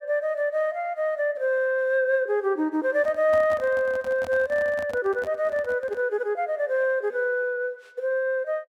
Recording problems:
handling noise; from 3 to 6 s; peak -10 dB vs average level

